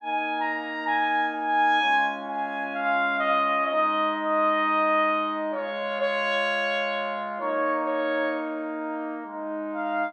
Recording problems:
none

